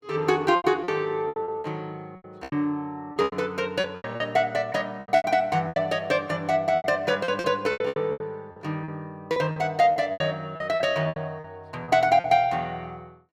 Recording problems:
packet loss; 15% of the sound replaced, filled with repeated pitch periods

